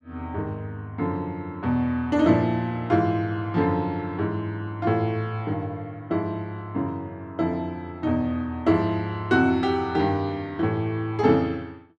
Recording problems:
none

